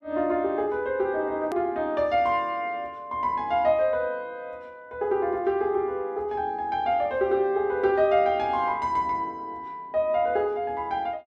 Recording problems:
hard cut with a click; at 1.5 s

